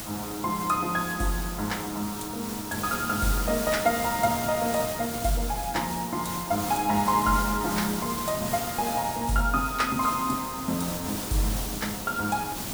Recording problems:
background hiss; slope -3 dB per octave, SNR 5 dB

